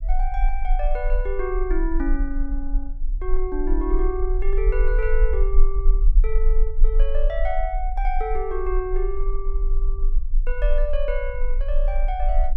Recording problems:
rumble; below 36 Hz, strongest tone 24 Hz, SNR -4 dB

